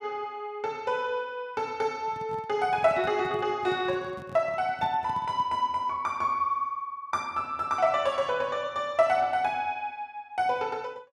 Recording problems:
microphone handling noise; from 2 to 5.5 s; peak -9 dB vs average level

